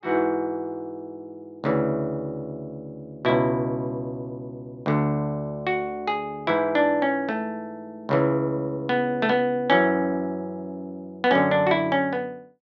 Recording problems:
none

